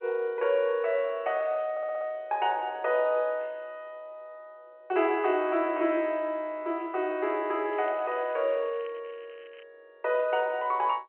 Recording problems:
telephone audio; 280 Hz to 3.1 kHz, G.711
stutter; at 1.5 s
crackle; from 7.5 to 9.5 s; loose cable, SNR 27 dB

